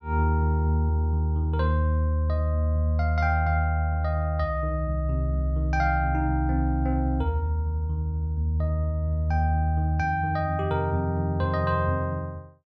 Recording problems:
none

